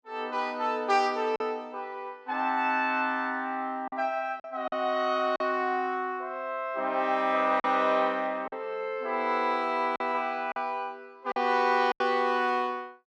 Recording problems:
lost packets; 4% of the sound replaced, filled with silence

